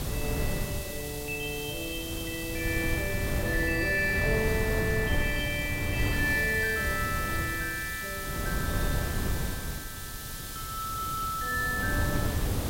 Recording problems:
background hiss; SNR 8 dB
wind noise; below 230 Hz, SNR 3 dB

